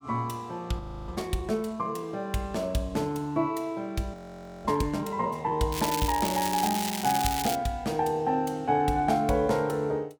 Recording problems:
audio freezing; at 1 s and at 4 s for 0.5 s
crackling; from 5.5 to 7.5 s; loose cable, SNR 4 dB

